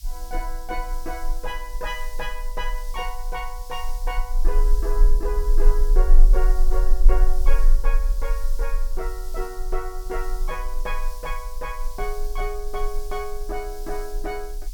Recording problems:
hiss; SNR 12 dB
rumble; below 32 Hz, strongest tone 22 Hz, SNR -6 dB

